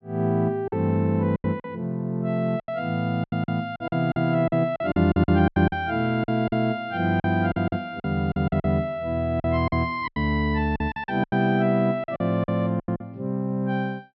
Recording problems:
low-pass filter; nothing above 5.5 kHz
lost packets; 13% of the sound replaced, filled with silence

